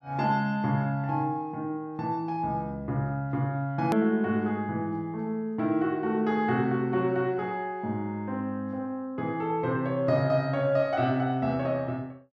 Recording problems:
click at an edit; at 4 s

